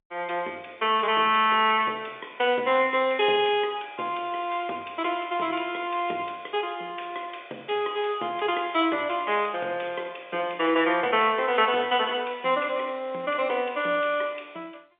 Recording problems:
telephone audio; 280 Hz to 3.6 kHz, G.711

